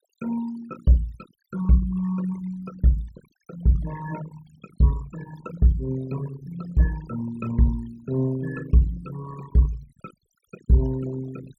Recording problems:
noise reduction artefacts; signal-to-artefact ratio 18 dB

